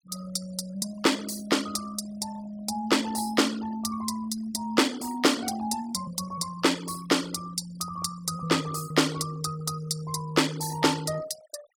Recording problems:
denoising artefacts; signal-to-artefact ratio 16 dB

